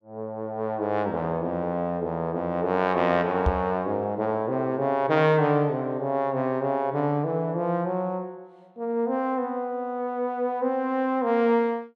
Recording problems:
microphone bump; at 3.5 s; peak +4 dB vs average level

